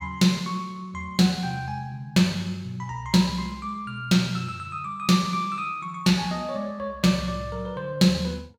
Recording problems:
none

